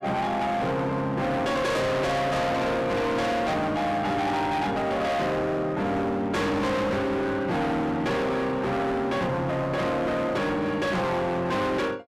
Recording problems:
distortion; hard clipping, signal-to-distortion ratio 6 dB

